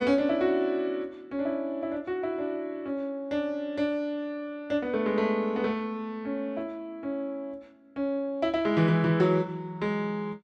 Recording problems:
none

